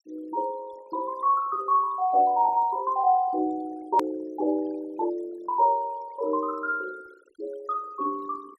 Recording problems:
denoising artefacts; signal-to-artefact ratio 24 dB
click at an edit; at 4 s

